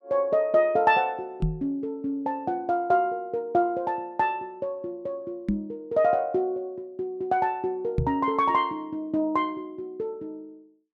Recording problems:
knock on the microphone; at 1.5 s, at 5.5 s and at 8 s; peak +4 dB vs average level

